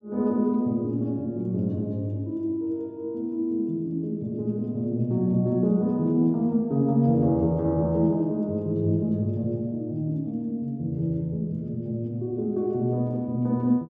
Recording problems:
none

